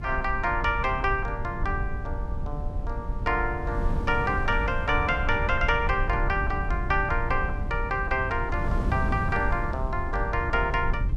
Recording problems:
low-frequency rumble; below 74 Hz, SNR 6 dB
wind on the microphone; below 140 Hz, SNR 8 dB

